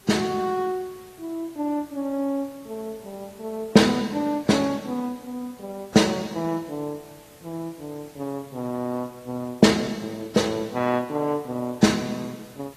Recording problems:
lossy codec; AAC, log-spectral distance 4 dB
background hiss; slope -3 dB per octave, SNR 24 dB

